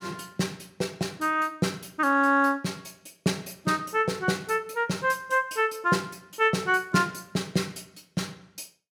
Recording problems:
none

